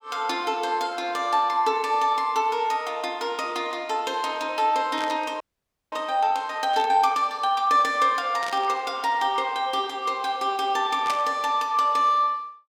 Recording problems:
static burst; 4 times, first at 5 s; peak -8 dB vs average level
audio freezing; at 5.5 s for 0.5 s

